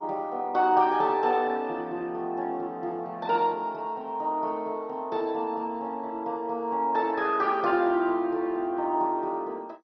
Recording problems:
lossy compression; MP2, log-spectral distance 2 dB, nothing above 5.8 kHz

